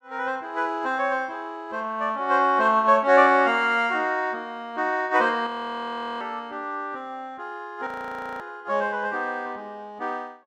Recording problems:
audio freezing; at 5.5 s for 0.5 s and at 8 s for 0.5 s

